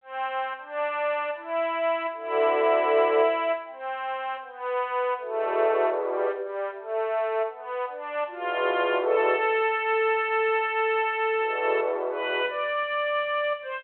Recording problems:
phone line; 340 Hz to 3.3 kHz, G.726

